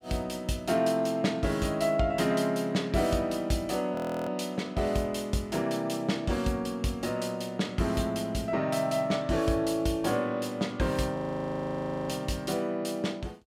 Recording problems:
audio freezing; at 4 s and at 11 s for 1 s

